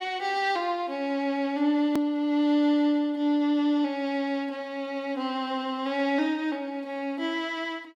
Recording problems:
click at an edit; at 2 s

